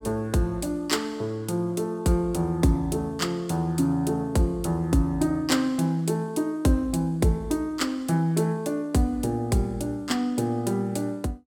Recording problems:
none

